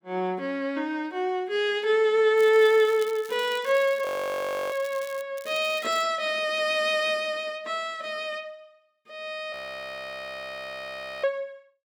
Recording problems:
crackle; from 2.5 to 5 s and at 5.5 s; loose cable, SNR 20 dB
frozen audio; at 4 s for 0.5 s and at 9.5 s for 1.5 s

